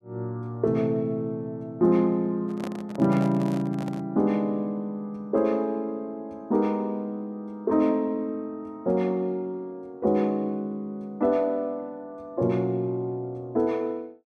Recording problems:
handling noise; from 2.5 to 4 s; peak -5 dB vs average level

